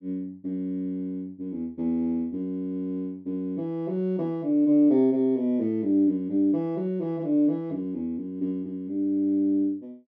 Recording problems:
none

